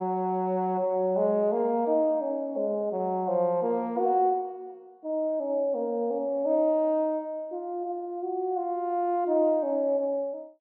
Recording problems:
none

